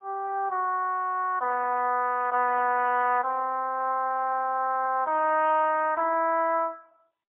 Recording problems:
telephone audio; 280 Hz to 3.1 kHz, AMR-NB, then MP3

